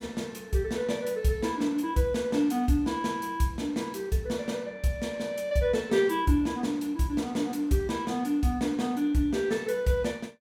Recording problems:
none

